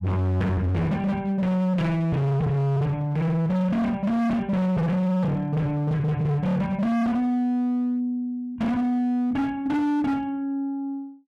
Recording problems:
distorted audio; hard clipping, uneven, signal-to-distortion ratio 6 dB

